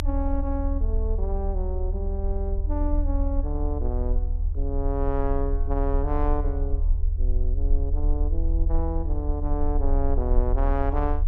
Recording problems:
rumble; below 74 Hz, strongest tone 34 Hz, SNR -4 dB

